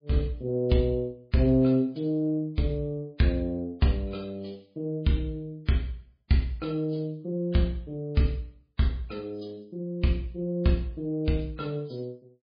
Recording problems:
codec artefacts; MP3, log-spectral distance 2 dB, nothing above 4.5 kHz

